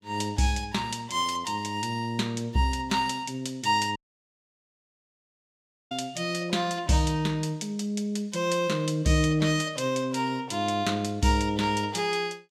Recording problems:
audio cutting out; at 4 s for 2 s

